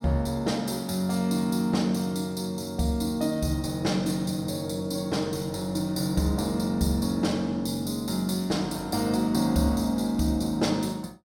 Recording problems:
none

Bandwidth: 17 kHz